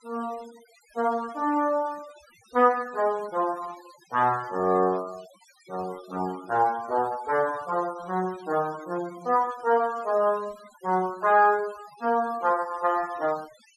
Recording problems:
noise reduction artefacts; signal-to-artefact ratio 22 dB

